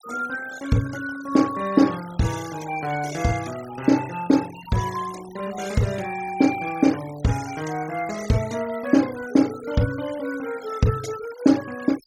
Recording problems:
denoising artefacts; signal-to-artefact ratio 17 dB

